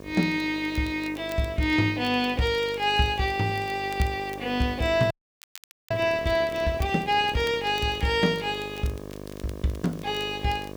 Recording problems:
hum; 50 Hz, harmonics up to 2.3 kHz, SNR 14 dB
background hiss; slope +2 dB per octave, SNR 29 dB
crackling; vinyl, SNR 25 dB
audio freezing; at 5 s for 1 s

